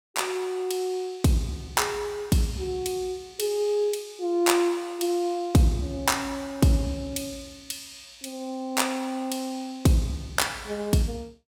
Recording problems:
none

